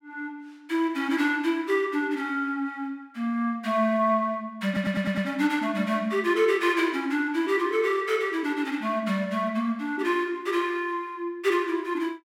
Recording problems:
stutter; at 4.5 s

